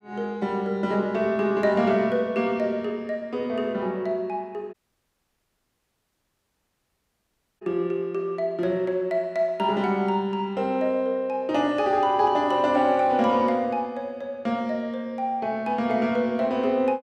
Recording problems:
audio cutting out; at 4.5 s for 3 s

